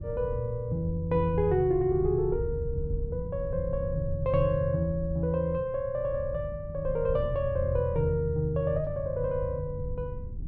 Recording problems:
wind on the microphone; below 100 Hz, SNR 10 dB

